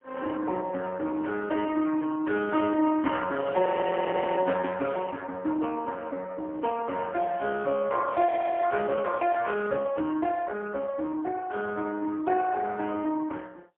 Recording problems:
telephone audio; 240 Hz to 3.4 kHz, AMR-NB, then MP3
audio freezing; at 3.5 s for 0.5 s and at 8.5 s

